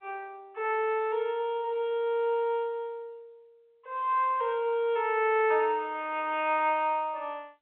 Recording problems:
telephone audio; 340 Hz to 3.6 kHz, G.711

